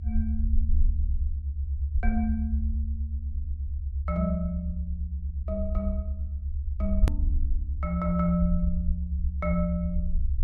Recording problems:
rumble; below 74 Hz, SNR -1 dB
edit click; at 7 s

